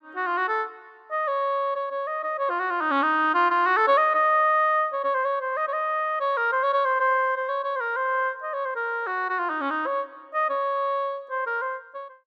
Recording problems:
none

